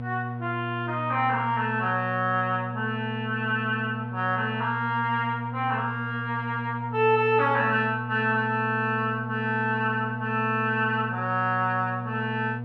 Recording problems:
hum; 60 Hz, harmonics up to 960 Hz, SNR 8 dB

